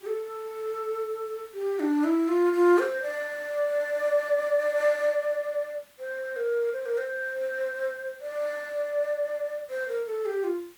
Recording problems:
background hiss; SNR 27 dB

